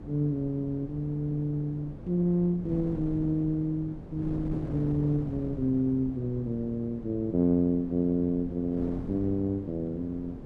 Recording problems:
wind noise; below 310 Hz, SNR 12 dB

